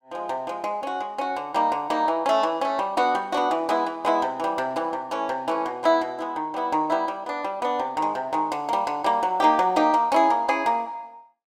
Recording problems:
none

